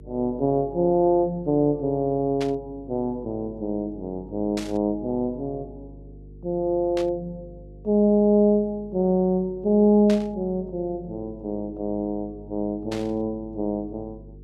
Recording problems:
hum; 50 Hz, harmonics up to 450 Hz, SNR 21 dB
burst of static; 5 times, first at 2.5 s; peak -7 dB vs average level

